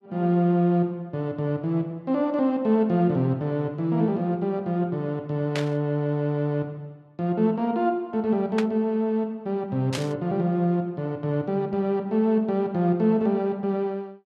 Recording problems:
burst of static; at 5.5 s, at 8.5 s and at 10 s; peak -2 dB vs average level

